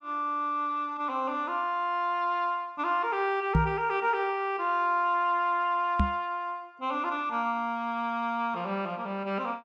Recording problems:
microphone thump; at 3.5 s and at 6 s; peak +8 dB vs average level

